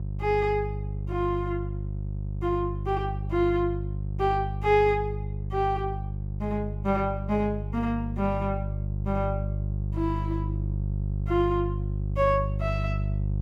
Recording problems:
mains hum; 50 Hz, harmonics up to 400 Hz, SNR 3 dB

